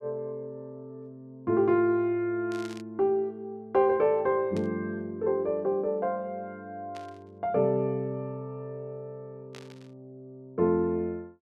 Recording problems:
static burst; 4 times, first at 2.5 s; peak -13 dB vs average level

